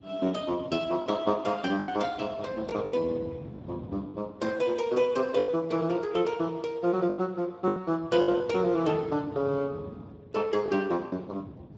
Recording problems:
lossy codec; Speex, log-spectral distance 3 dB
wind on the microphone; below 300 Hz, SNR 17 dB
packet loss; 6% of the sound replaced, filled with the last packet

